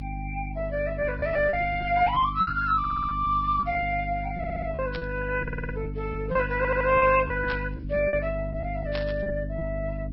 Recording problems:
lossy compression; MP2, then Vorbis, log-spectral distance 3 dB
hum; 50 Hz, harmonics up to 300 Hz, SNR 8 dB
packet loss; 8% of the sound replaced, filled with repeated pitch periods
audio stuttering; 4 times, first at 3 s
burst of static; at 5 s, at 7.5 s and at 9 s; peak -5 dB vs average level

